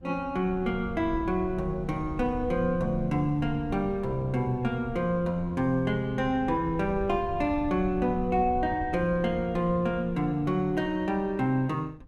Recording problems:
wind on the microphone; below 130 Hz, SNR 13 dB

